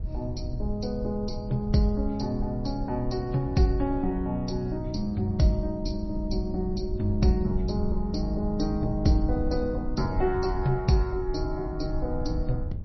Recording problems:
lossy codec; MP3, log-spectral distance 2 dB, nothing above 5.7 kHz
rumble; below 80 Hz, SNR 6 dB

